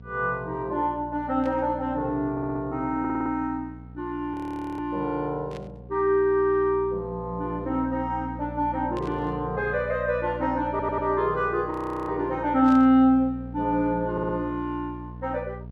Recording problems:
mains hum; 60 Hz, harmonics up to 720 Hz, SNR 15 dB
burst of static; 4 times, first at 1.5 s; peak -14 dB vs average level
stutter; 4 times, first at 2.5 s
audio freezing; at 4.5 s and at 12 s

